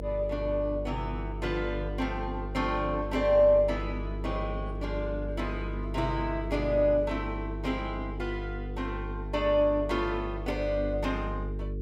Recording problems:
hum; 50 Hz, harmonics up to 450 Hz, SNR 7 dB

